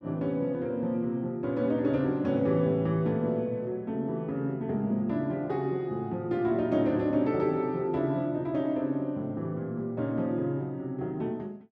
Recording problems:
none

